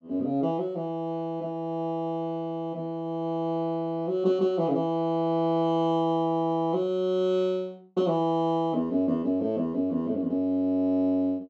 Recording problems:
none

